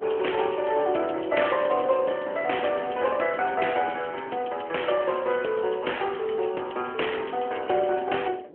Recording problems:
phone line; 280 Hz to 3.2 kHz, AMR-NB
wind on the microphone; below 490 Hz, SNR 19 dB

